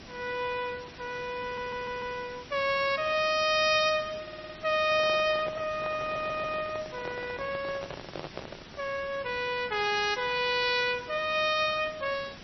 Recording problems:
codec artefacts; MP3, log-spectral distance 12 dB, nothing above 5 kHz
hiss; slope -2 dB per octave, SNR 17 dB
audio stuttering; at 1.5 s, at 4 s and at 6 s
microphone handling noise; from 5 to 9 s; peak -6 dB vs average level

